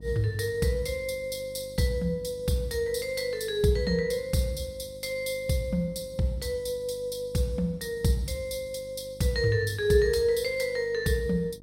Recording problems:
electrical hum; 50 Hz, harmonics up to 700 Hz, SNR 22 dB

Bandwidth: 16 kHz